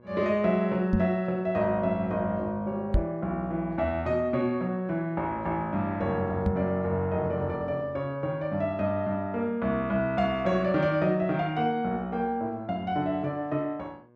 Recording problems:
hum; 60 Hz, harmonics up to 1.7 kHz, SNR 26 dB
microphone bump; at 1 s, at 3 s and at 6.5 s; peak +6 dB vs average level

